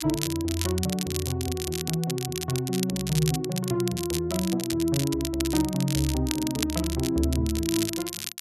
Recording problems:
crackle; vinyl, SNR 6 dB

